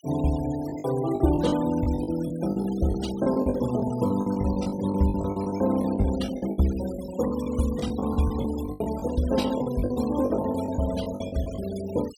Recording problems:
denoising artefacts; signal-to-artefact ratio 16 dB
lost packets; 15% of the sound replaced, filled with the last packet

